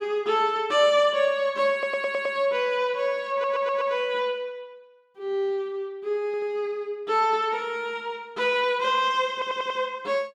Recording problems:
stutter; 4 times, first at 1.5 s

